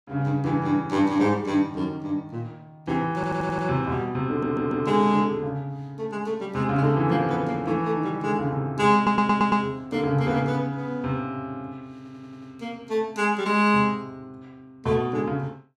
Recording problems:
audio stuttering; 4 times, first at 3 s

